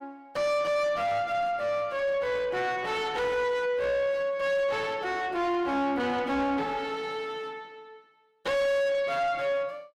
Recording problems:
distortion; soft clipping, signal-to-distortion ratio 5 dB

